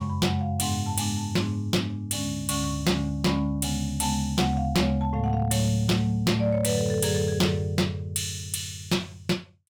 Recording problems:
distorted audio; hard clipping, signal-to-distortion ratio 11 dB

